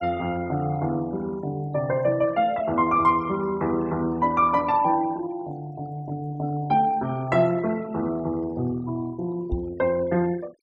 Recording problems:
noise reduction artefacts; signal-to-artefact ratio 23 dB
knock on the microphone; at 9.5 s; peak 0 dB vs average level

